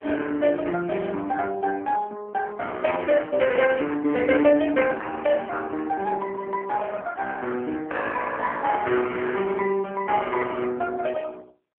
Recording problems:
phone line; 220 Hz to 3.1 kHz, AMR-NB

